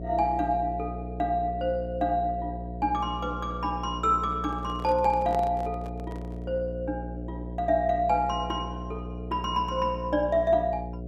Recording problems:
hum; 60 Hz, harmonics up to 720 Hz, SNR 9 dB
handling noise; from 4.5 to 6.5 s; peak -5 dB vs average level

